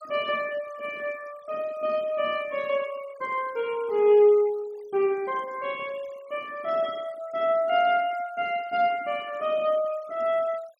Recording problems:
noise reduction artefacts; signal-to-artefact ratio 23 dB

